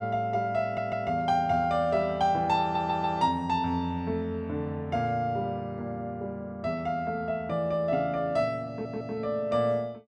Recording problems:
audio stuttering; at 0.5 s, at 2.5 s and at 8.5 s

